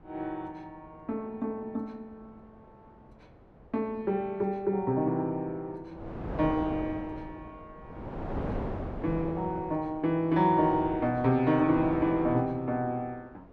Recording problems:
wind on the microphone; below 580 Hz, SNR 10 dB

